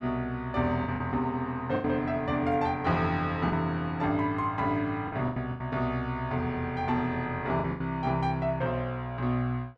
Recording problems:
packet loss; 5% of the sound replaced, filled with the last packet

